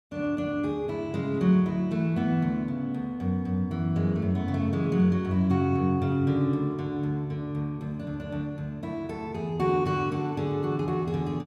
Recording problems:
none

